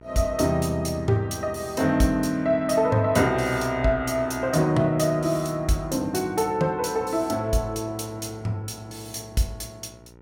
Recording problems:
hum; 60 Hz, harmonics up to 1.9 kHz, SNR 24 dB

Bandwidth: 17 kHz